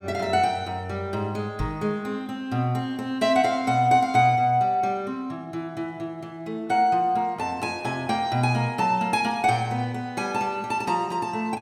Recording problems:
knock on the microphone; at 1.5 s; peak 0 dB vs average level

